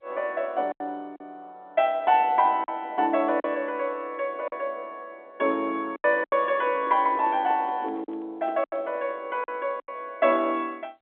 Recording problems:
telephone audio; 240 Hz to 3.5 kHz, G.711
packet loss; 6% of the sound replaced, filled with silence
microphone handling noise; from 6 to 9 s; peak -11 dB vs average level

